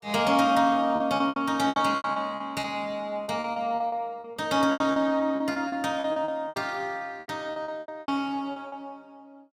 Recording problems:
lost packets; 17% of the sound replaced, filled with repeated pitch periods

